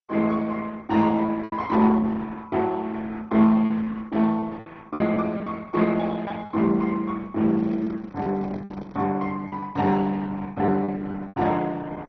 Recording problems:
lossy compression; Opus, then MP2, log-spectral distance 3 dB, nothing above 6 kHz
packet loss; 6% of the sound replaced, filled with repeated pitch periods
microphone handling noise; from 7.5 to 9 s; peak -11 dB vs average level

